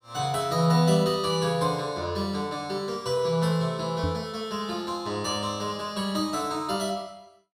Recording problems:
knock on the microphone; at 4 s; peak 0 dB vs average level

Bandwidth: 15 kHz